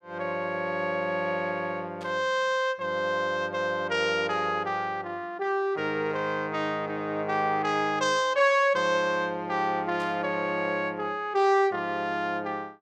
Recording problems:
burst of static; at 2 s and at 10 s; peak -14 dB vs average level

